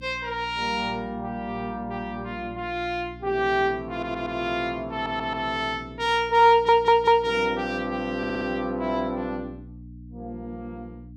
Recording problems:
hum; 60 Hz, harmonics up to 300 Hz, SNR 19 dB
stutter; 4 times, first at 4 s

